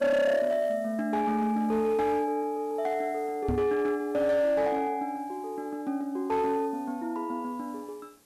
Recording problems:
distorted audio; hard clipping, signal-to-distortion ratio 12 dB
background hiss; SNR 29 dB
microphone thump; at 3.5 s; peak +2 dB vs average level

